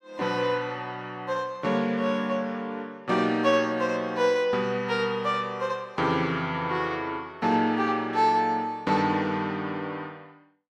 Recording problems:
none

